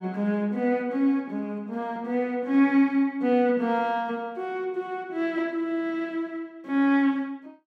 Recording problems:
none

